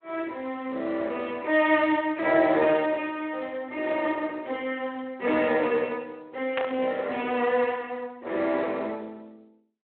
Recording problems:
phone line; 280 Hz to 3.4 kHz, Speex
static burst; at 6.5 s; peak -1 dB vs average level

